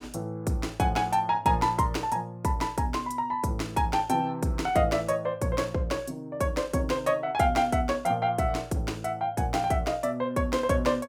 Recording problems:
none

